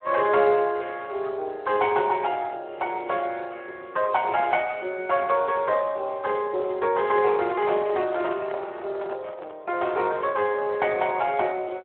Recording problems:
telephone audio; 320 Hz to 3.4 kHz, Speex
handling noise; from 7 to 9.5 s; peak -8 dB vs average level

